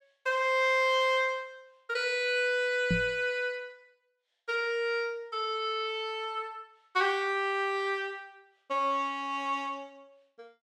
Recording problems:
knock on the microphone; at 3 s; peak +4 dB vs average level

